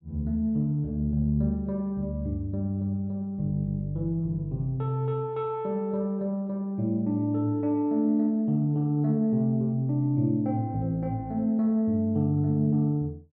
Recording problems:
none

